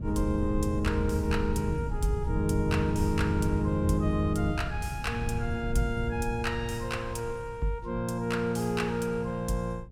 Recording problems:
wind on the microphone; below 120 Hz, SNR 5 dB

